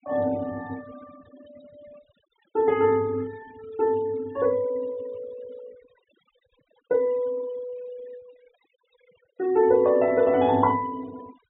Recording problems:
treble missing; nothing above 3.8 kHz
denoising artefacts; signal-to-artefact ratio 26 dB

